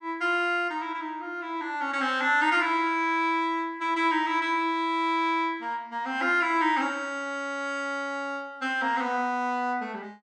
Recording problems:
none

